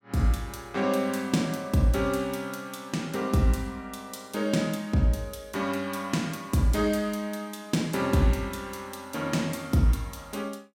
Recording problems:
none

